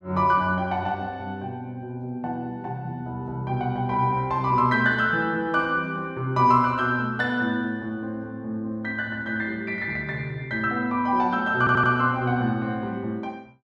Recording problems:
audio stuttering; at 12 s

